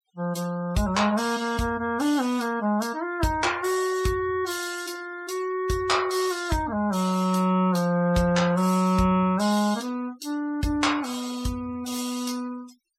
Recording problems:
denoising artefacts; signal-to-artefact ratio 21 dB

